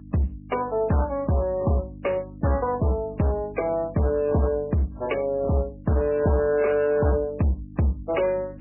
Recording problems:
lossy compression; AAC, then MP3, log-spectral distance 2 dB, nothing above 2.9 kHz
distortion; hard clipping, uneven, signal-to-distortion ratio 11 dB
hum; 50 Hz, harmonics up to 300 Hz, SNR 18 dB

